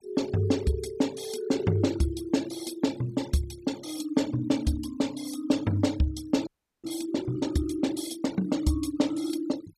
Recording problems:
noise reduction artefacts; signal-to-artefact ratio 18 dB
audio freezing; at 6.5 s

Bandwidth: 14.5 kHz